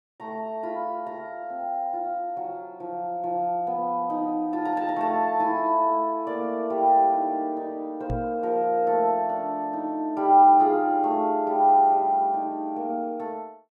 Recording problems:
microphone thump; at 8 s; peak -4 dB vs average level

